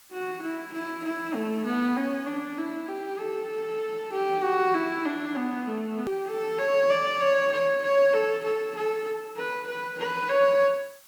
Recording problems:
background hiss; SNR 27 dB
hard cut with a click; at 6 s

